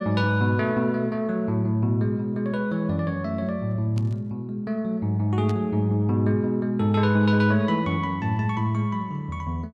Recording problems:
burst of static; at 4 s and at 5.5 s; peak -14 dB vs average level

